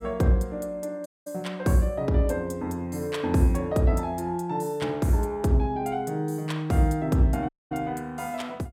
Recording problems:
audio cutting out; at 1 s and at 7.5 s

